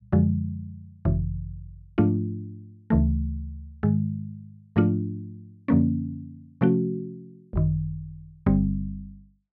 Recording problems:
none

